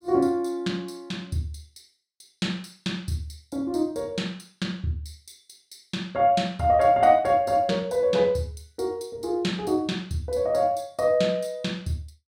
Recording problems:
none

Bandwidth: 16.5 kHz